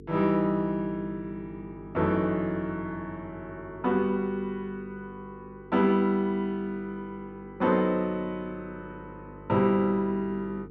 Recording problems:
hum; 50 Hz, harmonics up to 450 Hz, SNR 19 dB

